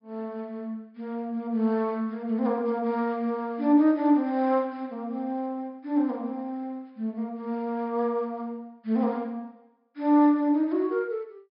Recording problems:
treble cut off; nothing above 5.5 kHz

